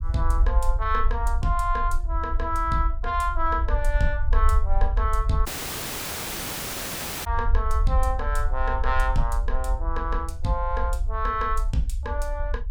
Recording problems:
low-frequency rumble; below 56 Hz, SNR 0 dB
dropout; at 5.5 s for 2 s

